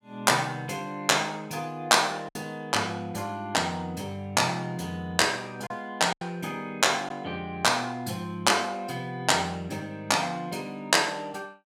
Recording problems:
packet loss; 1.6% of the sound replaced, filled with silence

